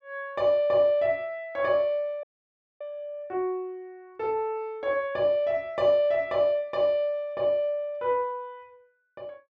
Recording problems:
frozen audio; at 2 s for 0.5 s

